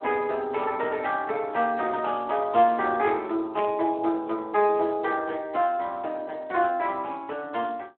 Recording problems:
telephone audio; 240 Hz to 3.6 kHz, Speex
static burst; at 3.5 s; peak -4 dB vs average level

